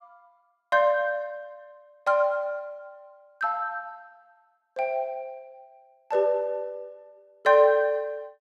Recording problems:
none

